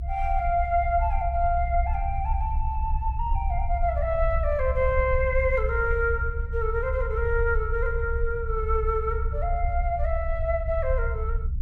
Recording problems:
low-frequency rumble; below 66 Hz, SNR 3 dB

